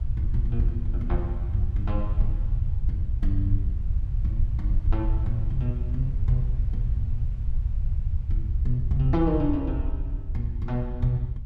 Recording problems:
low-frequency rumble; below 74 Hz, SNR -2 dB
wind on the microphone; below 860 Hz, SNR 27 dB

